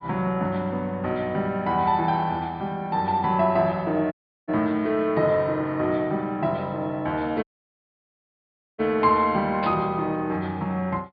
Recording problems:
treble cut off; nothing above 5 kHz
audio cutting out; at 4 s and at 7.5 s for 1.5 s
static burst; at 9.5 s; peak -6 dB vs average level

